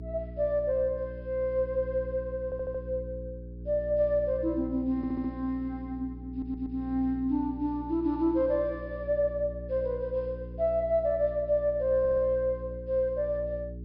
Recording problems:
treble missing; nothing above 5.5 kHz
electrical hum; 60 Hz, harmonics up to 420 Hz, SNR 12 dB
audio stuttering; 4 times, first at 2.5 s

